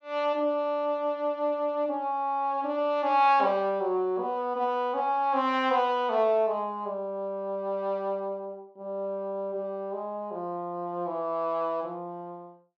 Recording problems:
none

